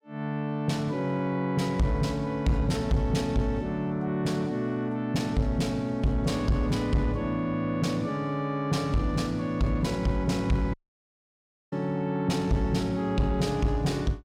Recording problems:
distorted audio; soft clipping, signal-to-distortion ratio 10 dB
audio cutting out; at 11 s for 1 s

